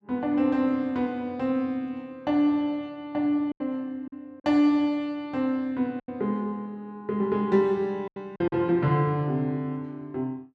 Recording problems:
lost packets; 4% of the sound replaced, filled with silence

